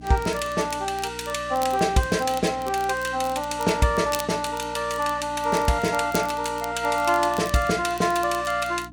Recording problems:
hum; 60 Hz, harmonics up to 300 Hz, SNR 19 dB
crackling; vinyl, SNR 18 dB

